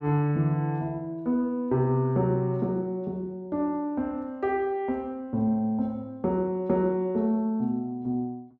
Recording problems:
none

